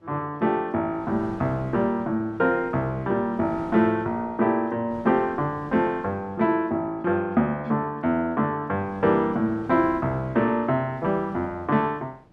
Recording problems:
wind noise; below 560 Hz, SNR 21 dB

